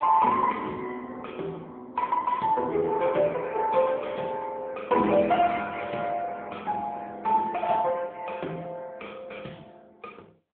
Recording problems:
phone line; 260 Hz to 3.4 kHz, AMR-NB

